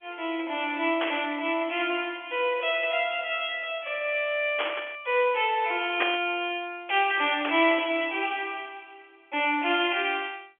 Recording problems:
phone line; 240 Hz to 3.4 kHz, G.711
burst of static; 4 times, first at 1 s; peak +4 dB vs average level

